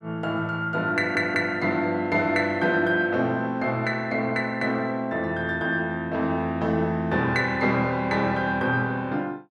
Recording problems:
audio stuttering; at 1 s

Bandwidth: 12.5 kHz